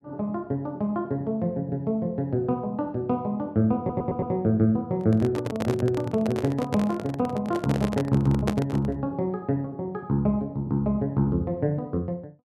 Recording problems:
audio stuttering; at 4 s
handling noise; from 5 to 9 s; peak +3 dB vs average level

